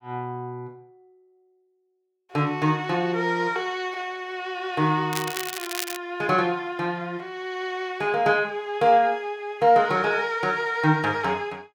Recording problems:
crackle; at 5 s; loose cable, SNR 7 dB

